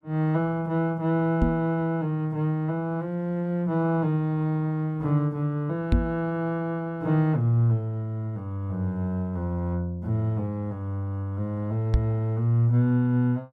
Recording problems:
microphone thump; at 1.5 s, at 6 s and at 12 s; peak +7 dB vs average level

